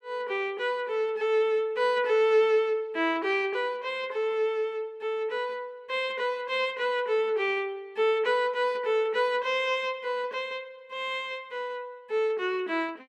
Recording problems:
none

